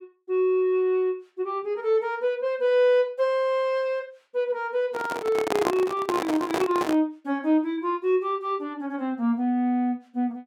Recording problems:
handling noise; from 5 to 7 s; peak +3 dB vs average level

